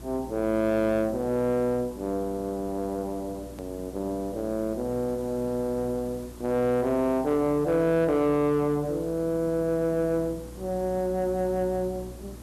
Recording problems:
distorted audio; soft clipping, signal-to-distortion ratio 11 dB
hum; 60 Hz, harmonics up to 360 Hz, SNR 19 dB
background hiss; SNR 20 dB
click at an edit; at 3.5 s

